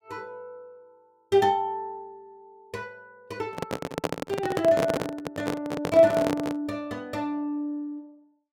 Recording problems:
microphone handling noise; from 3.5 to 6.5 s; peak +4 dB vs average level

